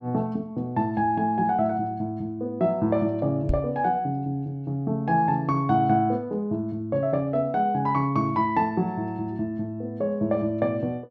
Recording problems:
microphone thump; at 3.5 s; peak +3 dB vs average level

